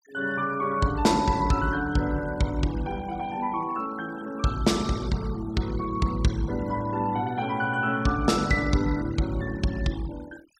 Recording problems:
noise reduction artefacts; signal-to-artefact ratio 20 dB

